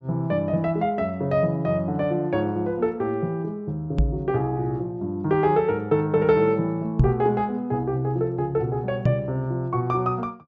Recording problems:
treble cut off; nothing above 8 kHz
microphone thump; at 4 s, at 7 s and at 9 s; peak +9 dB vs average level

